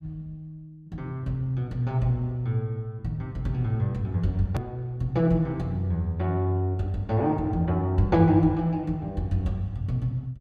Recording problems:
click at an edit; at 4.5 s

